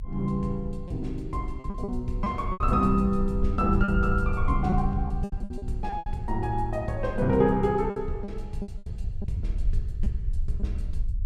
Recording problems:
rumble; below 66 Hz, strongest tone 22 Hz, SNR 5 dB
packet loss; 9% of the sound replaced, filled with repeated pitch periods

